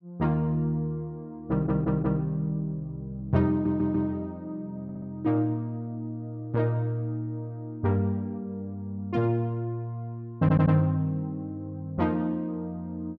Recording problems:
stutter; 4 times, first at 1.5 s

